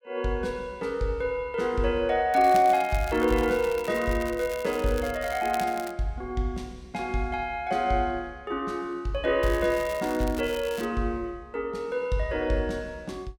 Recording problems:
crackling; from 2.5 to 6 s and from 9.5 to 11 s; loose cable, SNR 16 dB

